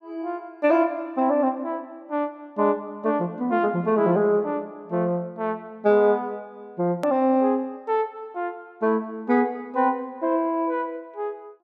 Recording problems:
edit click; at 7 s

